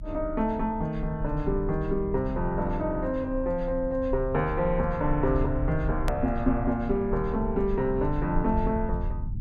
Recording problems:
rumble; below 70 Hz, SNR 7 dB
click at an edit; at 6 s

